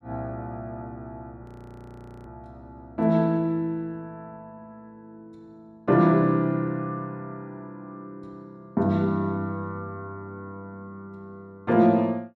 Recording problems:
audio freezing; at 1.5 s for 1 s

